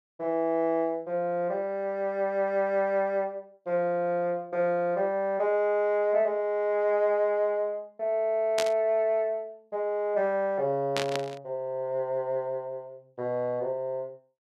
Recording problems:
static burst; at 8.5 s and at 11 s; peak +2 dB vs average level

